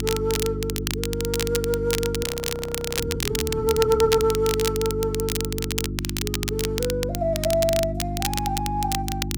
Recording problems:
hum; 50 Hz, harmonics up to 350 Hz, SNR 5 dB
crackling; vinyl, SNR 4 dB
frozen audio; at 2 s for 0.5 s

